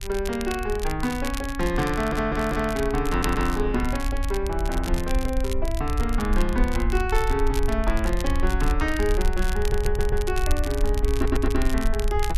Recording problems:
low-frequency rumble; below 58 Hz, SNR 2 dB
crackling; vinyl, SNR 12 dB
stutter; 4 times, first at 2 s

